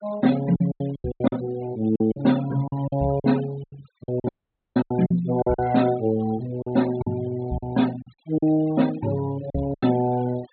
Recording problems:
treble cut off; nothing above 4.2 kHz
denoising artefacts; signal-to-artefact ratio 18 dB
packet loss; 12% of the sound replaced, filled with silence
audio cutting out; at 4.5 s

